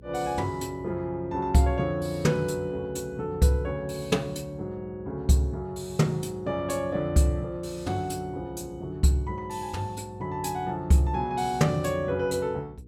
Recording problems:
hum; 60 Hz, harmonics up to 480 Hz, SNR 22 dB

